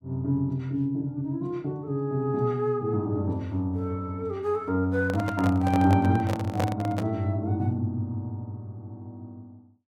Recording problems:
microphone handling noise; from 5 to 7 s; peak +2 dB vs average level

